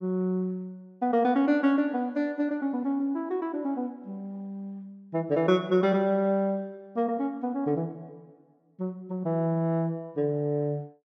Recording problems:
none

